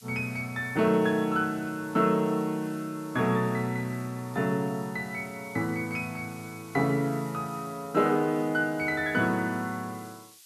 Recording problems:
background hiss; slope +6 dB per octave, SNR 22 dB

